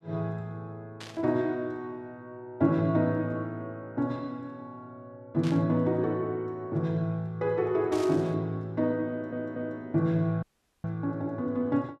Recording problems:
static burst; at 1 s, at 5.5 s and at 8 s; peak -8 dB vs average level
audio stuttering; at 9 s
audio cutting out; at 10 s

